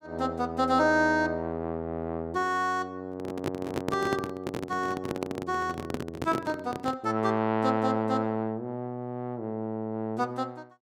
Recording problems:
handling noise; from 3 to 7 s; peak +2 dB vs average level

